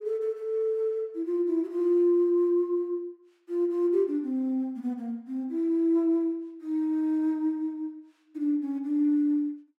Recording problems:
none

